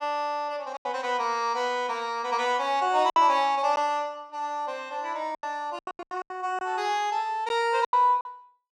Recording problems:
lost packets; 8% of the sound replaced, filled with silence

